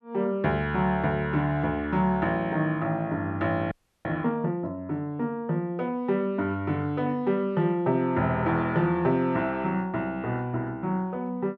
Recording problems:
frozen audio; at 3.5 s

